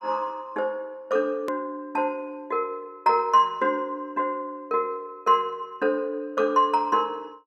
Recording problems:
edit click; at 1.5 s

